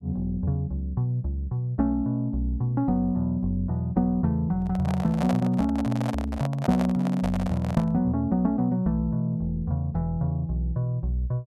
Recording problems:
handling noise; from 4.5 to 8 s; peak 0 dB vs average level

